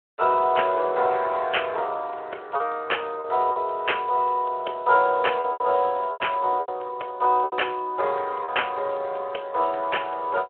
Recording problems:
telephone audio; 370 Hz to 3.2 kHz, Speex
lost packets; 5% of the sound replaced, filled with repeated pitch periods

